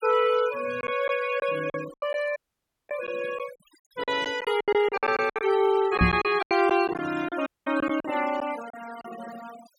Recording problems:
noise reduction artefacts; signal-to-artefact ratio 16 dB
lost packets; 11% of the sound replaced, filled with silence
dropout; at 2.5 s for 0.5 s and at 7.5 s
microphone bump; at 6 s; peak +7 dB vs average level

